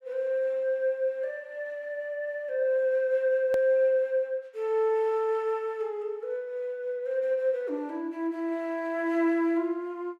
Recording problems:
edit click; at 3.5 s

